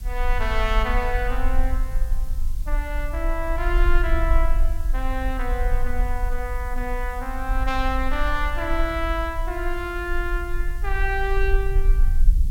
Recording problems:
hiss; slope +3 dB per octave, SNR 21 dB
rumble; below 44 Hz, strongest tone 20 Hz, SNR -1 dB

